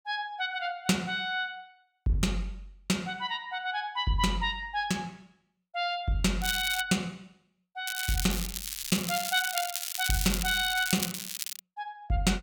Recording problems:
crackling; at 6.5 s and from 8 to 12 s; loose cable, SNR 3 dB

